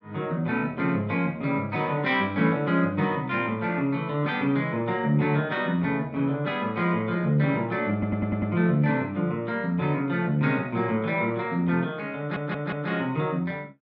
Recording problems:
stutter; at 8 s and at 12 s

